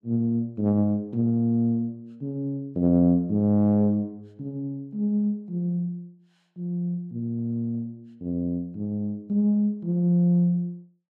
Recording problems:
none

